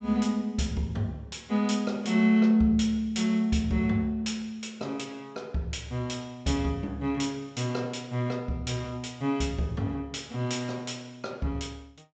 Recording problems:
treble missing; nothing above 8 kHz

